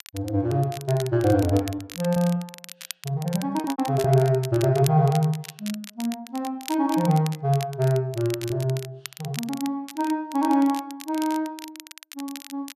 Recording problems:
crackling; vinyl, SNR 15 dB
lost packets; 3% of the sound replaced, filled with repeated pitch periods

